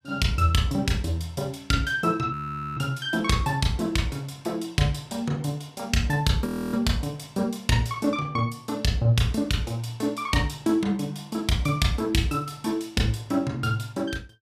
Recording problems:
frozen audio; at 2.5 s and at 6.5 s

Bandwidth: 14.5 kHz